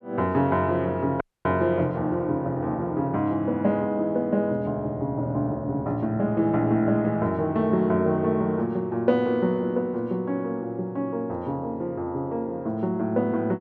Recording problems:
audio cutting out; at 1 s

